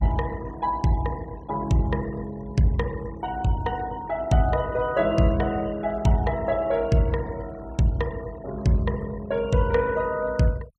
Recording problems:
denoising artefacts; signal-to-artefact ratio 23 dB

